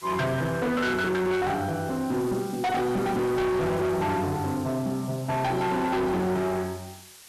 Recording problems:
distorted audio; hard clipping, signal-to-distortion ratio 7 dB
background hiss; slope +2 dB per octave, SNR 19 dB

